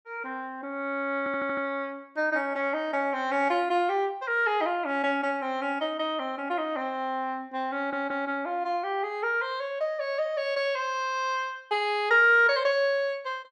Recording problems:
audio stuttering; at 1 s and at 8 s

